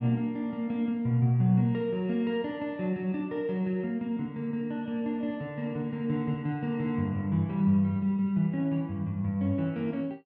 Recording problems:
none

